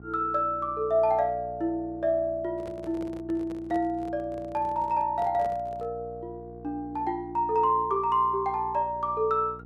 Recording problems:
hum; 60 Hz, harmonics up to 840 Hz, SNR 19 dB
microphone handling noise; from 2.5 to 6 s; peak -12 dB vs average level

